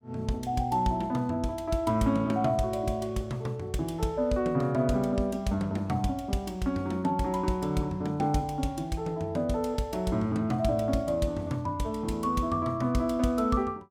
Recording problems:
none

